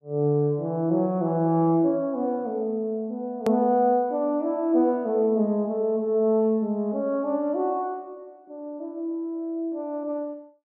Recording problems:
click at an edit; at 3.5 s

